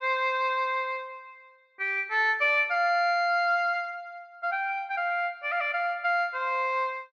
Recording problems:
none

